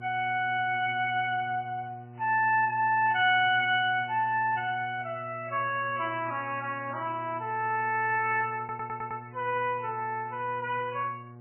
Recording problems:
codec artefacts; AAC, then MP3, log-spectral distance 2 dB, nothing above 2.7 kHz
electrical hum; 60 Hz, harmonics up to 1.1 kHz, SNR 18 dB
stutter; at 8.5 s

